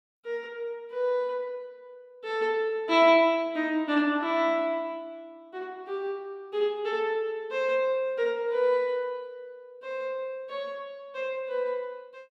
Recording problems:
none

